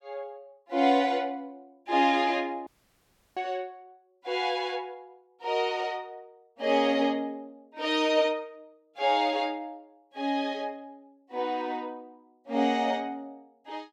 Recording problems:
audio cutting out; at 2.5 s for 0.5 s

